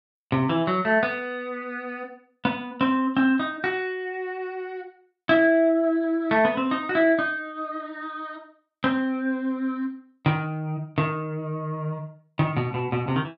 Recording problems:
none

